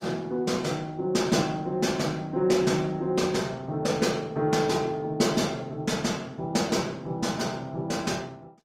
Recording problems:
lossy compression; Opus, log-spectral distance 3 dB

